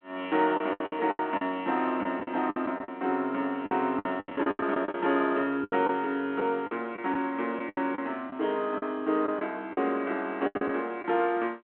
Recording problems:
phone line; 220 Hz to 3.3 kHz, G.726
lost packets; 13% of the sound replaced, filled with the last packet

